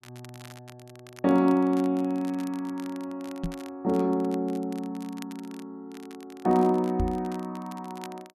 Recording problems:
crackling; vinyl, SNR 23 dB
knock on the microphone; at 3.5 s and at 7 s; peak +1 dB vs average level

